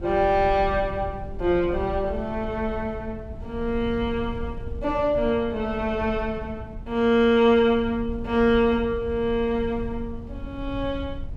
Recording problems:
wind noise; below 98 Hz, SNR 13 dB

